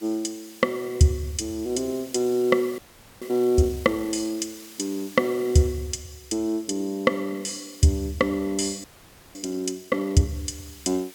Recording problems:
background hiss; slope 0 dB per octave, SNR 21 dB
frozen audio; at 3 s and at 9 s for 0.5 s

